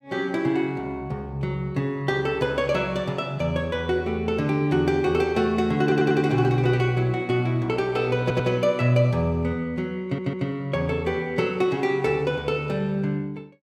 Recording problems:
audio stuttering; at 6 s, at 8 s and at 10 s

